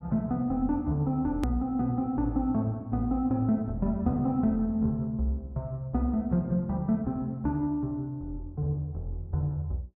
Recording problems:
click at an edit; at 1.5 s

